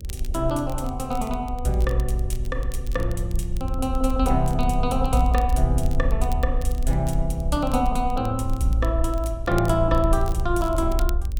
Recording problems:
electrical hum; 50 Hz, harmonics up to 600 Hz, SNR 19 dB
rumble; below 58 Hz, SNR 4 dB
crackling; vinyl, SNR 21 dB

